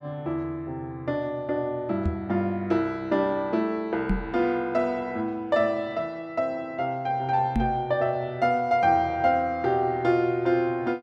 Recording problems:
microphone thump; at 2 s, at 4 s and at 7.5 s; peak +3 dB vs average level

